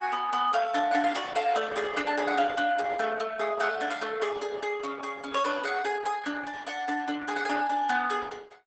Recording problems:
lossy compression; Opus, log-spectral distance 5 dB, nothing above 8 kHz

